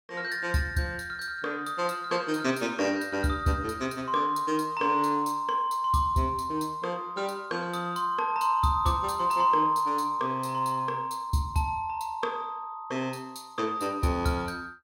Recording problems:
none

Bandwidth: 16.5 kHz